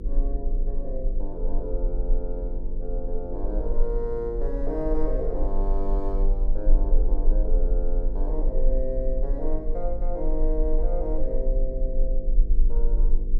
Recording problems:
hum; 50 Hz, harmonics up to 500 Hz, SNR 8 dB
low-frequency rumble; below 34 Hz, strongest tone 24 Hz, SNR -4 dB

